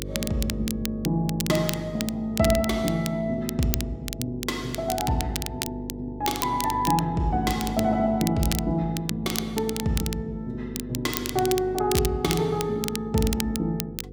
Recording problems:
hum; 50 Hz, harmonics up to 500 Hz, SNR 12 dB
crackling; vinyl, SNR 8 dB

